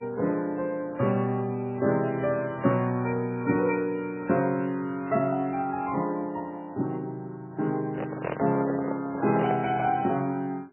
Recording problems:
lossy compression; MP3, log-spectral distance 2 dB, nothing above 2.5 kHz
handling noise; from 8 to 9.5 s; peak 0 dB vs average level

